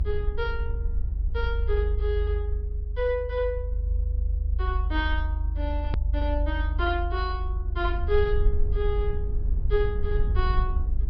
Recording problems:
treble missing; nothing above 5.5 kHz
low-frequency rumble; below 74 Hz, strongest tone 48 Hz, SNR -3 dB
edit click; at 6 s

